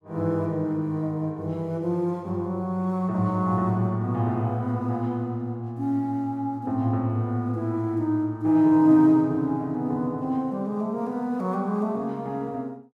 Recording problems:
none

